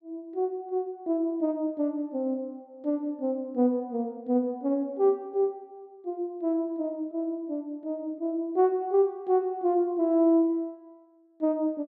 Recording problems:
none

